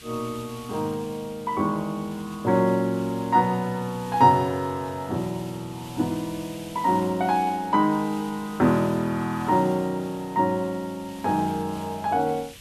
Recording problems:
background hiss; SNR 20 dB

